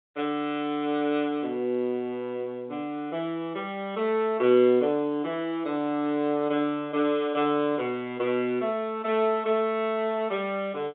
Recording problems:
phone line; 170 Hz to 3.7 kHz, G.711

